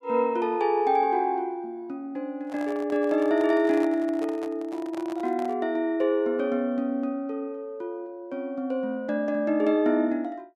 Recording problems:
microphone handling noise; from 2.5 to 5.5 s; peak -9 dB vs average level

